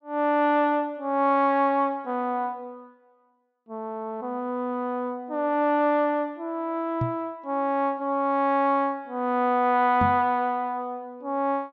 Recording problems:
treble missing; nothing above 7.5 kHz
knock on the microphone; at 7 s and at 10 s; peak +1 dB vs average level

